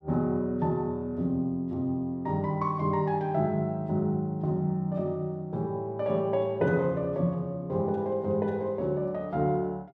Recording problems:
none

